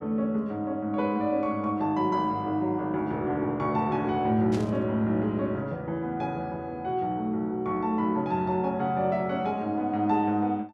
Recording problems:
static burst; at 4.5 s; peak -10 dB vs average level

